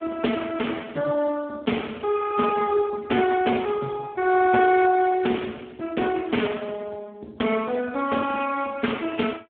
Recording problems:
telephone audio; 260 Hz to 2.8 kHz, Speex

